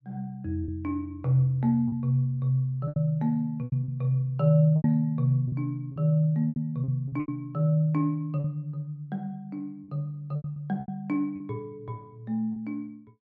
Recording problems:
packet loss; 8% of the sound replaced, filled with repeated pitch periods

